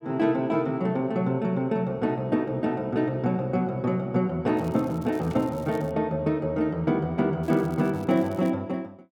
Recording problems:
crackling; from 4.5 to 6 s and from 7.5 to 8.5 s; loose cable, SNR 27 dB

